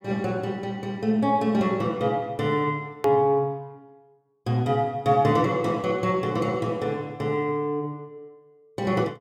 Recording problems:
edit click; at 3 s

